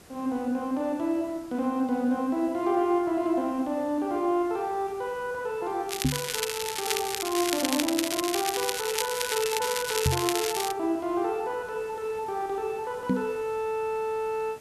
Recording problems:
hiss; slope -4 dB per octave, SNR 22 dB
crackle; from 6 to 11 s; loose cable, SNR 2 dB
microphone bump; at 6 s, at 10 s and at 13 s; peak +7 dB vs average level

